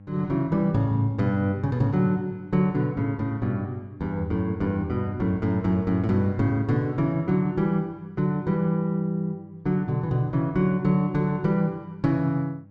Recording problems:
electrical hum; 50 Hz, harmonics up to 800 Hz, SNR 23 dB

